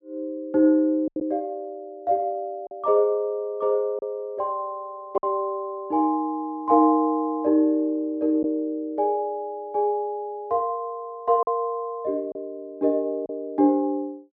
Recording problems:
packet loss; 2% of the sound replaced, filled with silence

